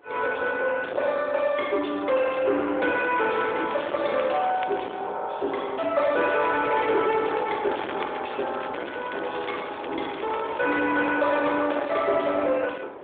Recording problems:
telephone audio; 260 Hz to 3.6 kHz, AMR-NB
distortion; soft clipping, signal-to-distortion ratio 9 dB
wind on the microphone; below 860 Hz, SNR 18 dB
crackling; from 3 to 5 s and from 6.5 to 11 s; loose cable, SNR 16 dB

